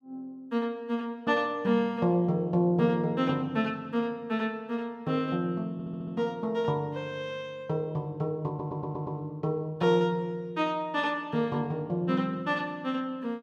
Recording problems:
stutter; at 5.5 s and at 8.5 s

